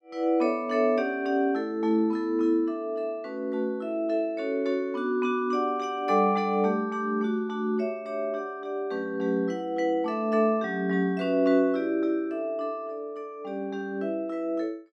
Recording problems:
none

